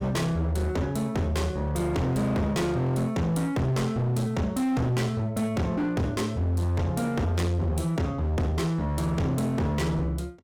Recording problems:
distorted audio; hard clipping, uneven, signal-to-distortion ratio 7 dB

